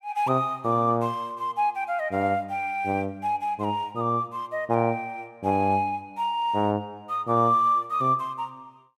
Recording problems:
none

